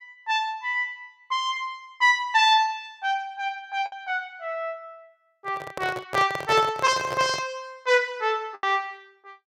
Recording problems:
lost packets; 1.9% of the sound replaced, filled with the last packet
handling noise; from 5.5 to 7.5 s; peak -1 dB vs average level

